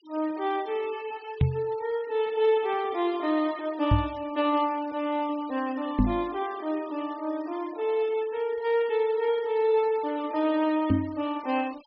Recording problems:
treble cut off; nothing above 5.5 kHz
denoising artefacts; signal-to-artefact ratio 23 dB
knock on the microphone; 4 times, first at 1.5 s; peak +8 dB vs average level

